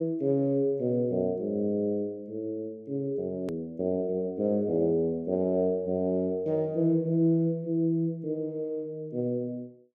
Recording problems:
hard cut with a click; at 3.5 s

